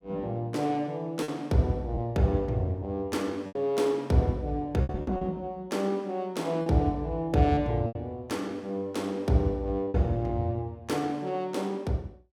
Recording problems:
lost packets; 5% of the sound replaced, filled with repeated pitch periods

